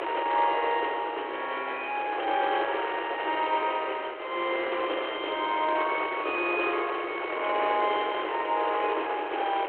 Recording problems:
telephone audio; 300 Hz to 3.3 kHz, G.726
wind noise; below 1.8 kHz, SNR 5 dB

